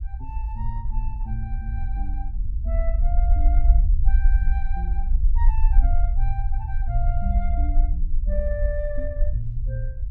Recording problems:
low-frequency rumble; below 52 Hz, SNR -10 dB

